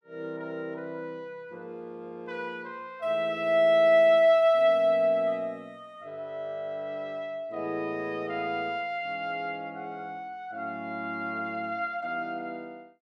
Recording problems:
none

